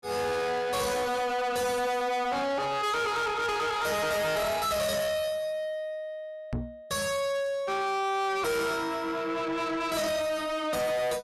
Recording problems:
distortion; soft clipping, signal-to-distortion ratio 7 dB
knock on the microphone; at 6.5 s; peak 0 dB vs average level

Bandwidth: 14.5 kHz